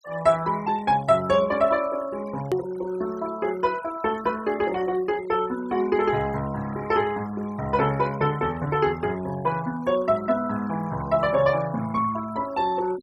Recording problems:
denoising artefacts; signal-to-artefact ratio 19 dB
click at an edit; at 2.5 s

